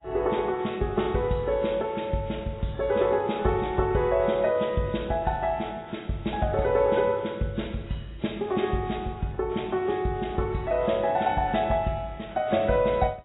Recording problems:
codec artefacts; AAC, log-spectral distance 4 dB, nothing above 3.8 kHz

